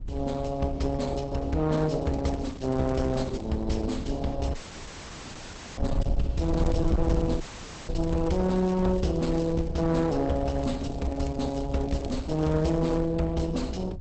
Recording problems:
codec artefacts; Opus, log-spectral distance 5 dB, nothing above 8 kHz
distortion; hard clipping, signal-to-distortion ratio 12 dB
wind on the microphone; below 84 Hz, SNR 8 dB
crackling; from 2 to 3.5 s, from 6.5 to 9.5 s and from 10 to 13 s; loose cable, SNR 25 dB
dropout; at 4.5 s for 1 s and at 7.5 s

